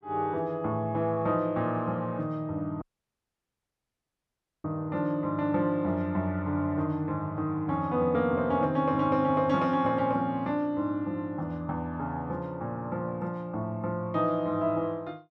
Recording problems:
audio cutting out; at 3 s for 2 s

